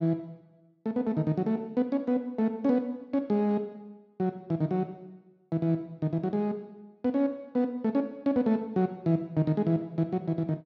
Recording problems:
none

